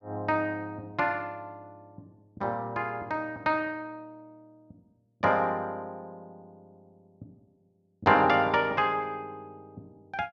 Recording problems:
none

